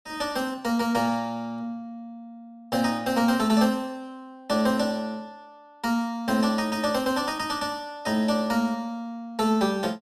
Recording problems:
none

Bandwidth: 13.5 kHz